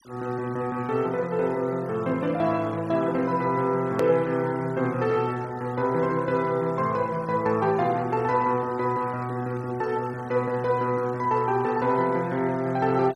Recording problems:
denoising artefacts; signal-to-artefact ratio 24 dB
hard cut with a click; at 4 s

